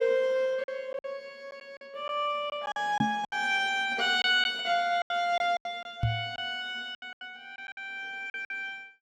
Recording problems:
lost packets; 10% of the sound replaced, filled with silence
knock on the microphone; at 3 s and at 6 s; peak +5 dB vs average level

